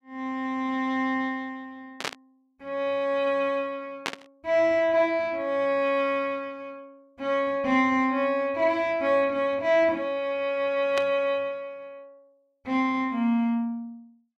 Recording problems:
burst of static; at 2 s, at 4 s and at 11 s; peak 0 dB vs average level

